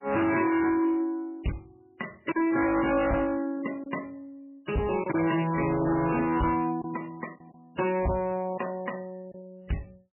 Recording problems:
lossy compression; AAC, then MP3, log-spectral distance 4 dB, nothing above 2.8 kHz
distortion; hard clipping, signal-to-distortion ratio 7 dB
packet loss; 1.9% of the sound replaced, filled with silence

